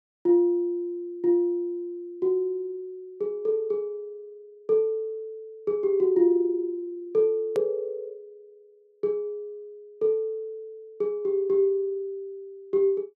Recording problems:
hard cut with a click; at 7.5 s

